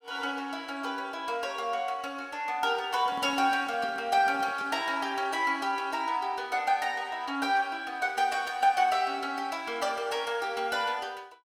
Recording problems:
microphone handling noise; from 3 to 5 s; peak -10 dB vs average level

